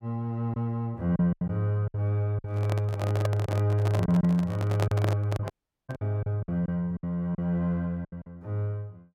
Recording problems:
packet loss; 8% of the sound replaced, filled with silence
microphone handling noise; from 2.5 to 6 s; peak +1 dB vs average level
audio cutting out; at 5.5 s

